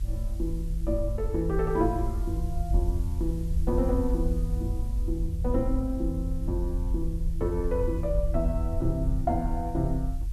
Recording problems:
background hiss; slope +1 dB per octave, SNR 24 dB
rumble; below 68 Hz, SNR 0 dB

